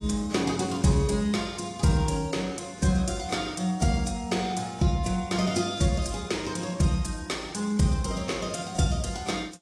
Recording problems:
lossy compression; AAC, log-spectral distance 3 dB

